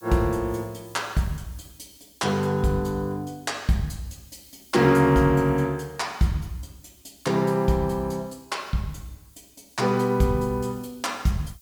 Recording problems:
hiss; SNR 27 dB

